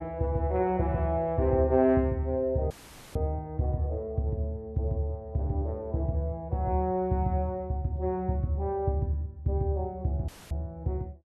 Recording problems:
dropout; at 2.5 s and at 10 s; filled with static

